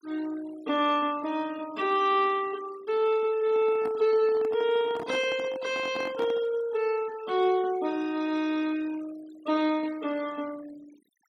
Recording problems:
noise reduction artefacts; signal-to-artefact ratio 21 dB
microphone handling noise; from 3.5 to 6.5 s; peak -7 dB vs average level

